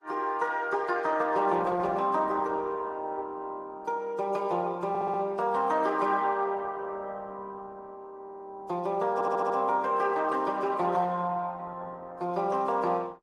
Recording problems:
lossy codec; Opus, then AAC, log-spectral distance 2 dB
stutter; at 5 s, at 8 s and at 9 s

